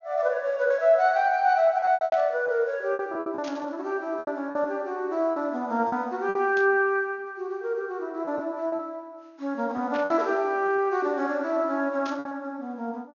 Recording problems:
treble cut off; nothing above 6.9 kHz
lost packets; 8% of the sound replaced, filled with repeated pitch periods
static burst; 5 times, first at 2 s; peak -10 dB vs average level

